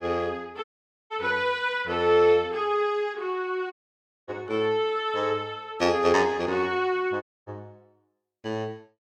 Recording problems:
dropout; at 0.5 s, at 3.5 s for 0.5 s and at 7 s

